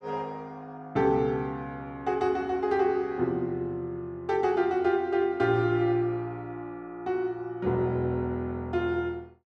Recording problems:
none

